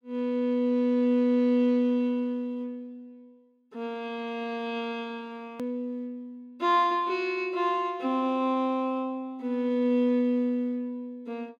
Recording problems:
edit click; at 5.5 s

